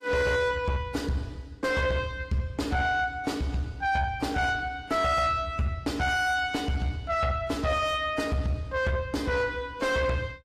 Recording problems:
codec artefacts; AAC, log-spectral distance 2 dB
distorted audio; soft clipping, signal-to-distortion ratio 6 dB

